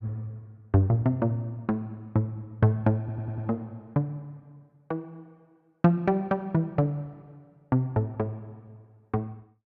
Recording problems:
stutter; at 3 s

